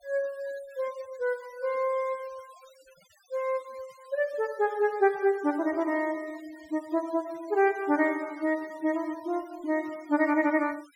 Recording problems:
noise reduction artefacts; signal-to-artefact ratio 24 dB

